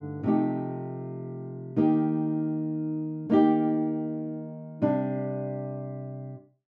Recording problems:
none

